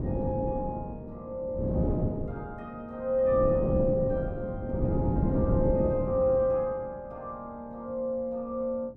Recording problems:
wind on the microphone; below 300 Hz, SNR 1 dB

